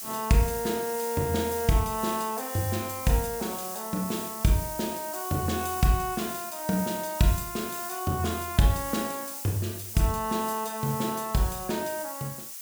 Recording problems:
background hiss; slope +3 dB per octave, SNR 7 dB

